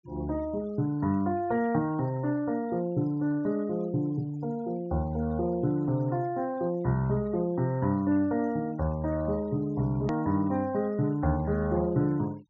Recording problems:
low-pass filter; nothing above 7.1 kHz
denoising artefacts; signal-to-artefact ratio 26 dB
edit click; at 10 s

